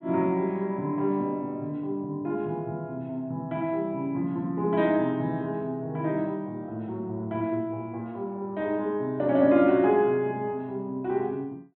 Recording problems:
treble cut off; nothing above 3.9 kHz

